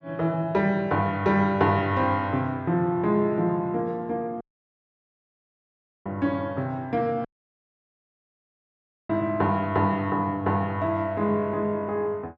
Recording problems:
audio cutting out; at 4.5 s for 1.5 s and at 7.5 s for 2 s

